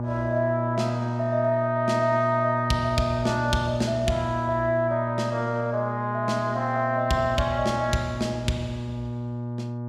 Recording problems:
electrical hum; 60 Hz, harmonics up to 1.2 kHz, SNR 5 dB

